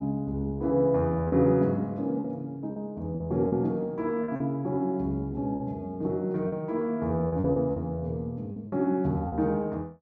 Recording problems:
lost packets; 6% of the sound replaced, filled with repeated pitch periods

